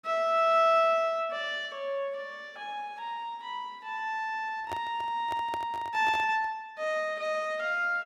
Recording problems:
microphone handling noise; from 4.5 to 6.5 s; peak -5 dB vs average level

